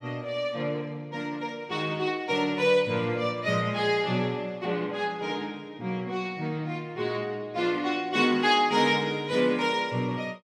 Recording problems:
none

